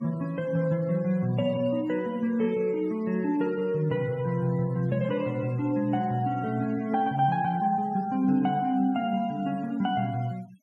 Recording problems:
noise reduction artefacts; signal-to-artefact ratio 25 dB

